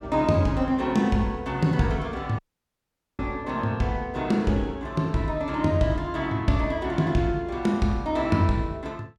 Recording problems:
audio cutting out; at 2.5 s for 1 s

